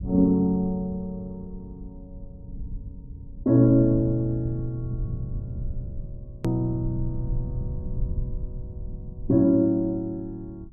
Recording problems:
low-frequency rumble; below 100 Hz, SNR 13 dB
hard cut with a click; at 6.5 s

